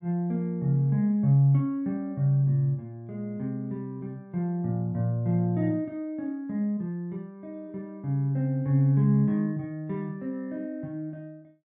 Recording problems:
none

